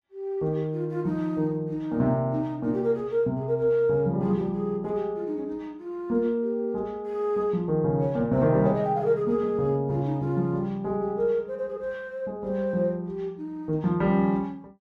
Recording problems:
none

